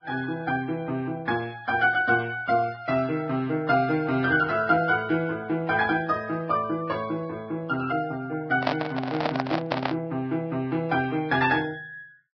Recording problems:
lossy compression; Vorbis, log-spectral distance 3 dB, nothing above 5 kHz
microphone handling noise; from 8.5 to 10 s; peak +4 dB vs average level

